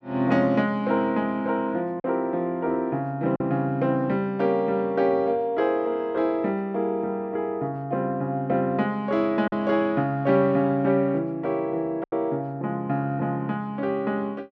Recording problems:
packet loss; 1.4% of the sound replaced, filled with silence

